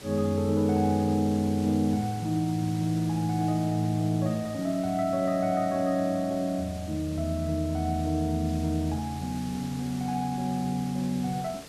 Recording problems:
hiss; SNR 17 dB

